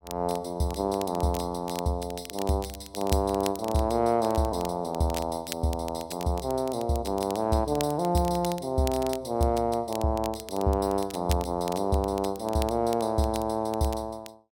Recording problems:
crackling; vinyl, SNR 15 dB

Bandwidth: 16.5 kHz